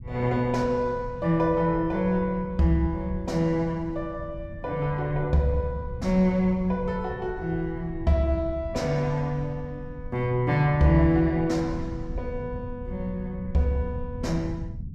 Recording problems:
low-frequency rumble; below 130 Hz, SNR 13 dB

